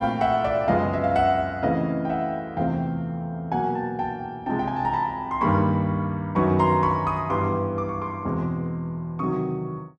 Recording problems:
none

